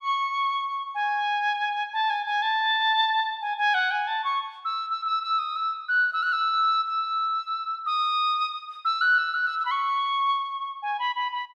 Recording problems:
none

